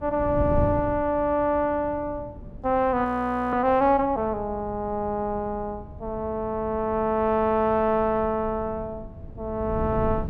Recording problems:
wind on the microphone; below 180 Hz, SNR 13 dB
frozen audio; at 3 s

